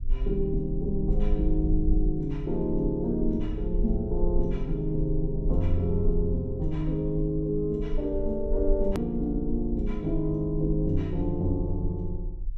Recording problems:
rumble; below 44 Hz, strongest tone 22 Hz, SNR 5 dB
click at an edit; at 9 s

